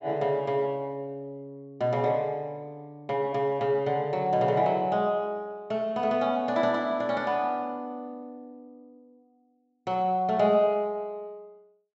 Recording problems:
treble missing; nothing above 8 kHz

